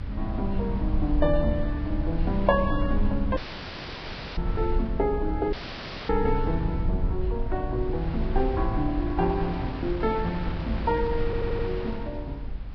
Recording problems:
codec artefacts; Vorbis, log-spectral distance 4 dB
rumble; below 70 Hz, SNR 3 dB
wind on the microphone; below 1.4 kHz, SNR 13 dB
audio cutting out; at 3.5 s for 1 s and at 5.5 s for 0.5 s
audio stuttering; at 11 s

